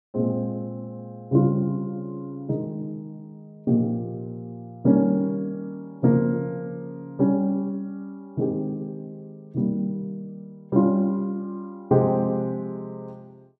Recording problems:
none

